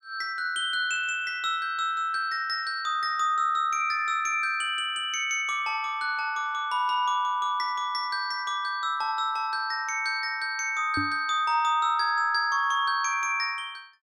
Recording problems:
microphone bump; at 11 s; peak -2 dB vs average level

